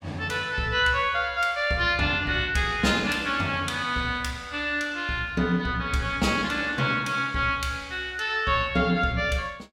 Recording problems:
none

